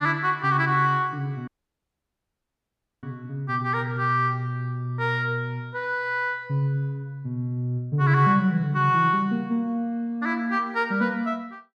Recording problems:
dropout; at 1.5 s for 1.5 s

